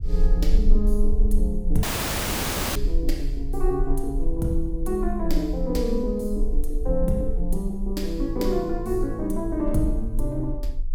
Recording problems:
rumble; below 38 Hz, strongest tone 22 Hz, SNR 1 dB
audio cutting out; at 2 s for 1 s

